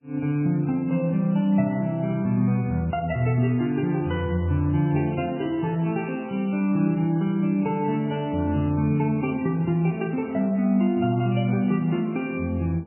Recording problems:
lossy compression; MP3, log-spectral distance 2 dB, nothing above 2.4 kHz

